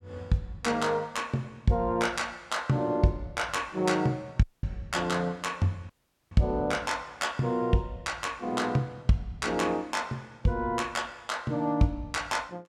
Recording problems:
dropout; at 4.5 s and at 6 s

